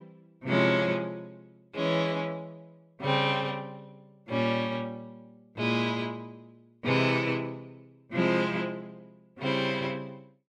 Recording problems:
none

